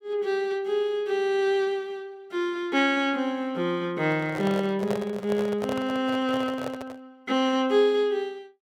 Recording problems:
microphone handling noise; from 4 to 7 s; peak -2 dB vs average level

